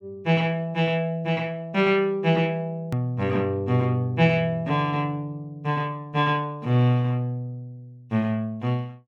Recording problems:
hard cut with a click; at 3 s

